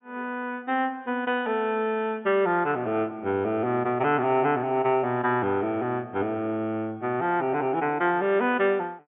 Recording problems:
low-pass filter; nothing above 3.3 kHz

